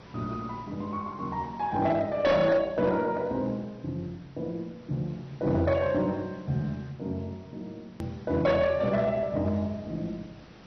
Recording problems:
lossy compression; MP2, log-spectral distance 2 dB
distortion; hard clipping, uneven, signal-to-distortion ratio 12 dB
background hiss; slope -5 dB per octave, SNR 22 dB
click at an edit; at 8 s

